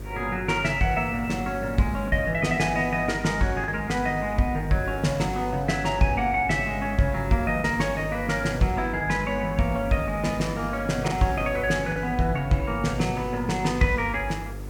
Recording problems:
electrical hum; 50 Hz, harmonics up to 500 Hz, SNR 12 dB
background hiss; slope -5 dB per octave, SNR 24 dB
lost packets; 1.4% of the sound replaced, filled with the last packet

